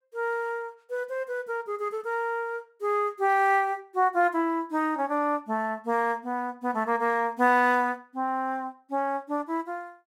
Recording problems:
none

